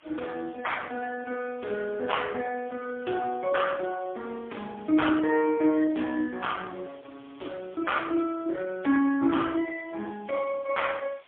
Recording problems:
phone line; 240 Hz to 3.4 kHz, AMR-NB, then MP3
background hiss; SNR 28 dB

